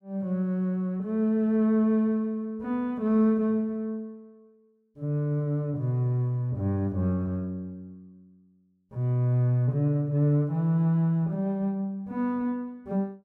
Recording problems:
none

